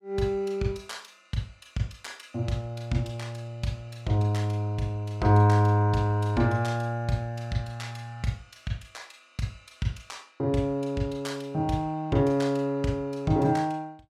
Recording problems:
none

